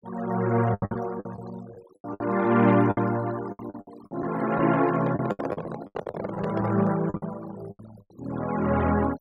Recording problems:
noise reduction artefacts; signal-to-artefact ratio 17 dB
packet loss; 14% of the sound replaced, filled with the last packet
microphone handling noise; from 5 to 7 s; peak -1 dB vs average level

